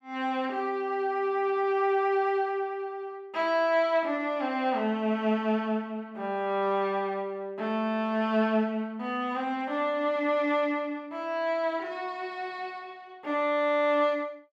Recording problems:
none

